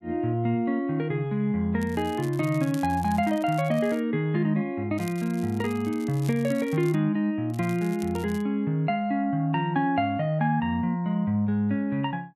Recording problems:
crackling; from 2 to 4 s, from 5 to 7 s and at 7.5 s; loose cable, SNR 22 dB

